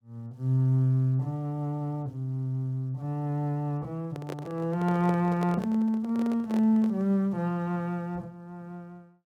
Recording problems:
handling noise; from 4 to 7 s; peak -4 dB vs average level

